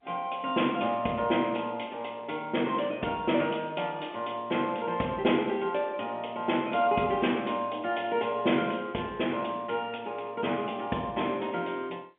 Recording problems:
phone line; 240 Hz to 3.3 kHz, G.711

